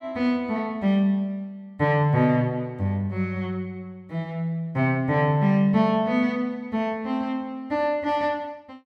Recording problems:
none

